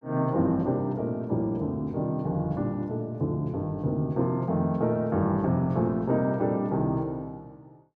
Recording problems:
none

